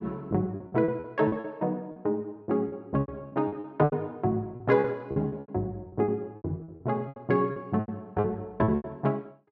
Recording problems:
lost packets; 16% of the sound replaced, filled with repeated pitch periods

